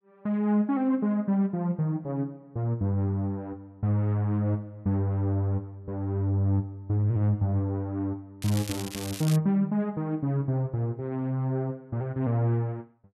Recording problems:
crackle; at 8.5 s; loose cable, SNR 11 dB

